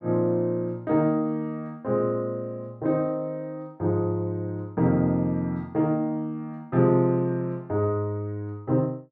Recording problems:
none

